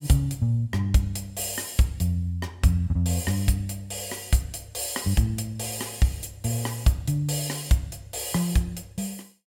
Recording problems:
none

